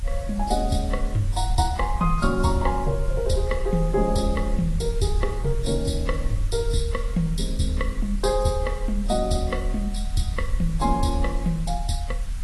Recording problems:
lossy codec; AAC, log-spectral distance 3 dB
hiss; slope 0 dB per octave, SNR 19 dB
low-frequency rumble; below 44 Hz, strongest tone 38 Hz, SNR 4 dB

